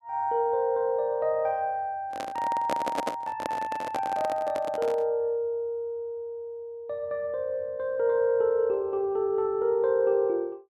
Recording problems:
microphone handling noise; from 2 to 5 s; peak +2 dB vs average level

